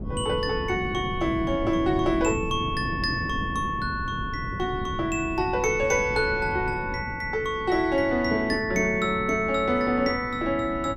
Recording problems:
wind noise; below 240 Hz, SNR 9 dB

